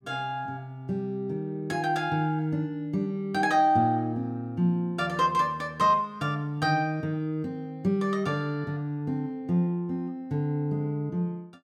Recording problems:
none

